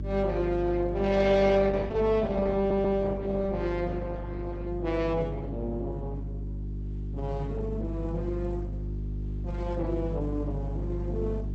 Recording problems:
lossy codec; Opus, log-spectral distance 2 dB, nothing above 7.6 kHz
electrical hum; 50 Hz, harmonics up to 400 Hz, SNR 6 dB
stutter; at 2.5 s

